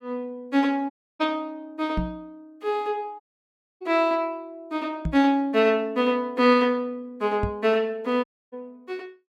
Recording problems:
dropout; at 1 s, at 3 s for 0.5 s and at 8 s
microphone thump; at 2 s, at 5 s and at 7.5 s; peak 0 dB vs average level

